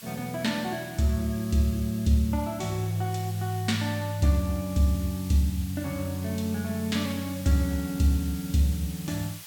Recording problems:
hiss; slope +2 dB per octave, SNR 16 dB

